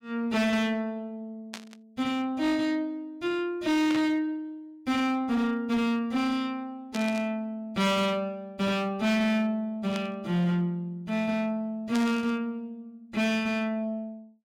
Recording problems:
distortion; hard clipping, signal-to-distortion ratio 10 dB
static burst; 5 times, first at 1.5 s; peak -5 dB vs average level

